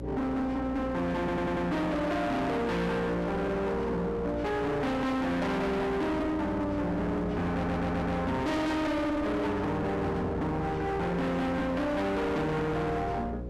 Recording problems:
distorted audio; hard clipping, uneven, signal-to-distortion ratio 6 dB
hum; 60 Hz, harmonics up to 720 Hz, SNR 10 dB
wind noise; below 630 Hz, SNR 17 dB
stutter; at 1 s and at 7.5 s

